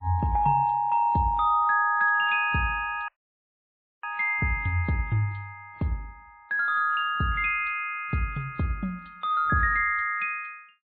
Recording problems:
treble missing; nothing above 4.3 kHz
lossy codec; MP3, log-spectral distance 2 dB
audio cutting out; at 3 s for 1 s

